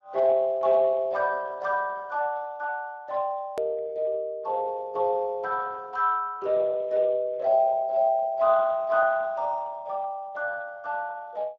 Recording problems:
lossy codec; Speex, log-spectral distance 2 dB
hard cut with a click; at 3.5 s

